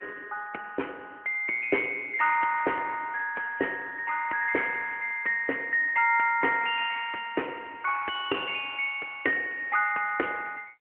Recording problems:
phone line; 280 Hz to 3.1 kHz, AMR-NB

